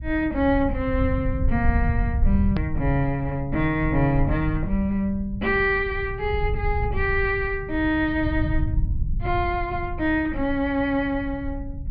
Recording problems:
low-pass filter; nothing above 5.5 kHz
rumble; below 90 Hz, SNR 5 dB
hard cut with a click; at 2.5 s

